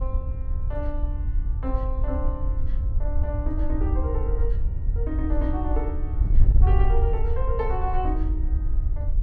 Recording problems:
wind noise; below 64 Hz, SNR -7 dB

